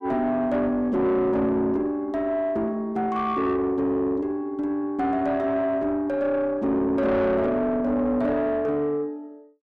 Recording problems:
distortion; soft clipping, signal-to-distortion ratio 9 dB

